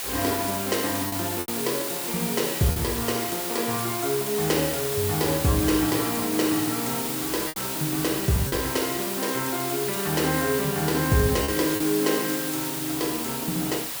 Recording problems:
hiss; SNR 2 dB
lost packets; 3% of the sound replaced, filled with repeated pitch periods

